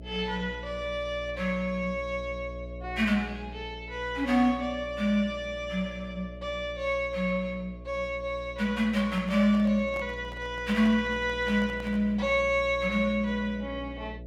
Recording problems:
hum; 60 Hz, harmonics up to 660 Hz, SNR 14 dB
handling noise; from 9 to 12 s; peak -10 dB vs average level

